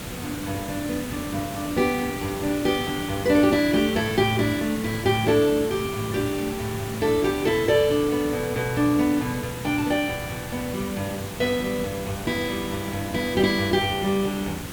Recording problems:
background hiss; slope -4 dB per octave, SNR 9 dB

